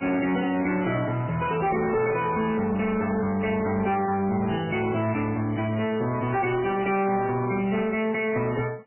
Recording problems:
lossy compression; MP3, log-spectral distance 4 dB, nothing above 3 kHz
distortion; soft clipping, signal-to-distortion ratio 11 dB

